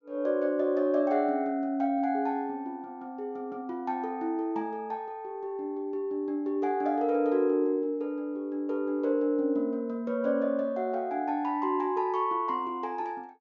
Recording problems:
low-pass filter; nothing above 7.1 kHz

